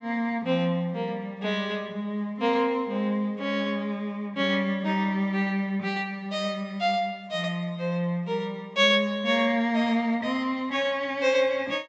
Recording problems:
low-pass filter; nothing above 8 kHz

